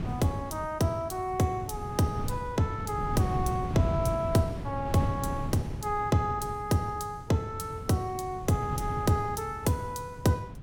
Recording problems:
wind noise; below 190 Hz, SNR 7 dB

